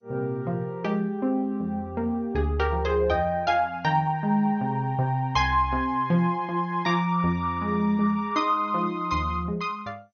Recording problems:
lossy codec; MP2, log-spectral distance 2 dB, nothing above 6.2 kHz

